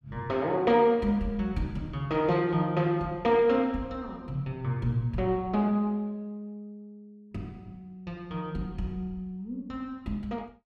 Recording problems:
none

